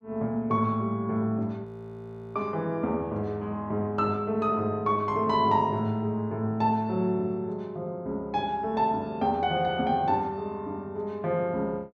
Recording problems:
audio freezing; at 1.5 s for 0.5 s

